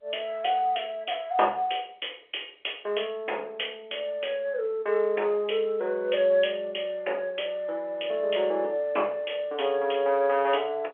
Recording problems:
phone line; 340 Hz to 3.4 kHz, G.711

